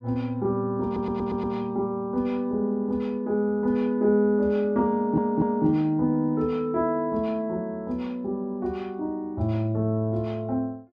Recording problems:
audio stuttering; at 1 s and at 5 s

